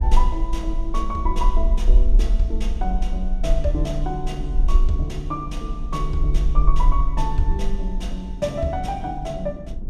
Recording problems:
rumble; below 42 Hz, SNR -4 dB
wind on the microphone; below 280 Hz, SNR 13 dB

